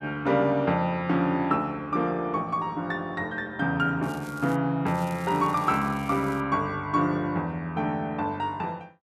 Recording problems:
crackle; at 4 s and from 5 to 6.5 s; loose cable, SNR 23 dB

